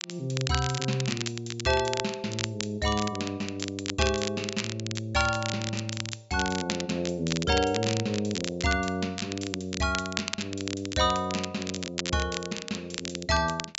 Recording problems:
treble cut off; nothing above 8 kHz
crackle; vinyl, SNR 6 dB

